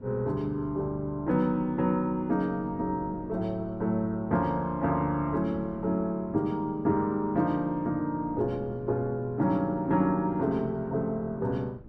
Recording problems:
wind noise; below 300 Hz, SNR 19 dB

